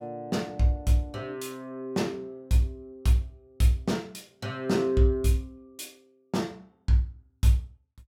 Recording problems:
none

